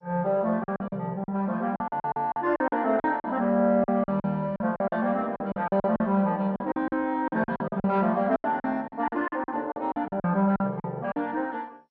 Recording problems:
codec artefacts; MP2, log-spectral distance 2 dB, nothing above 5.2 kHz
lost packets; 16% of the sound replaced, filled with silence

